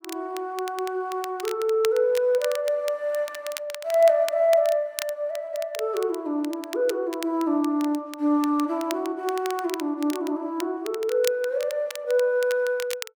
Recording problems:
crackle; vinyl, SNR 14 dB

